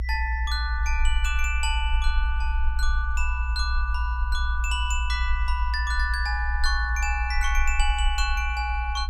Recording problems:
rumble; below 60 Hz, SNR -1 dB

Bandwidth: 15 kHz